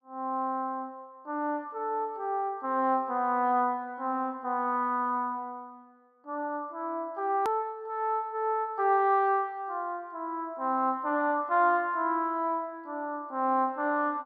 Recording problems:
click at an edit; at 7.5 s

